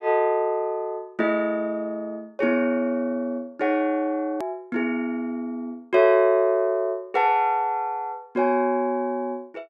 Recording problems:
edit click; at 4.5 s

